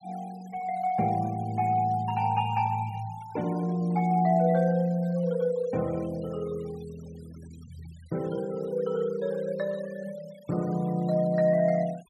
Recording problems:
noise reduction artefacts; signal-to-artefact ratio 24 dB

